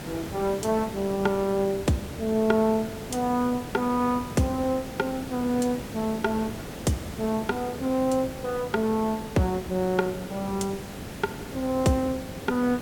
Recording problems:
hiss; SNR 10 dB

